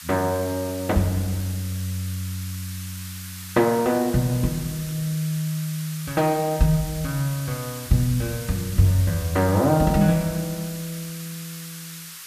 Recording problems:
hiss; SNR 12 dB

